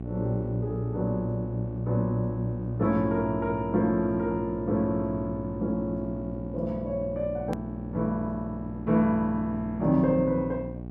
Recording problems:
hum; 60 Hz, harmonics up to 840 Hz, SNR 9 dB
click at an edit; at 7.5 s

